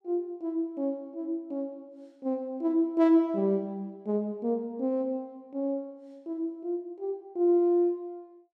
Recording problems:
none

